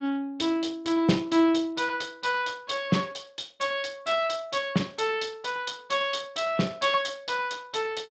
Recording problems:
lossy compression; Speex, log-spectral distance 6 dB, nothing above 7.6 kHz

